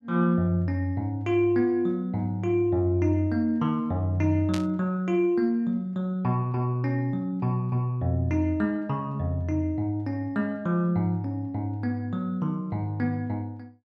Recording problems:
static burst; at 4.5 s; peak -5 dB vs average level

